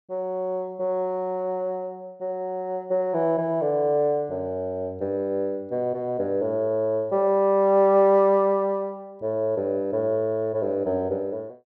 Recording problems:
none

